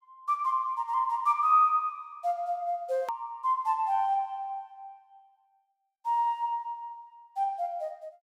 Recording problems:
hard cut with a click; at 3 s

